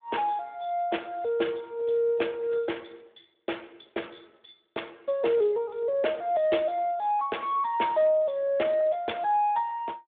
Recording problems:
phone line; 280 Hz to 3.6 kHz, Speex

